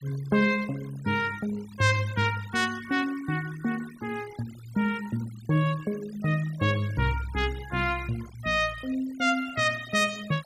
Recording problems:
denoising artefacts; signal-to-artefact ratio 19 dB

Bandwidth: 15.5 kHz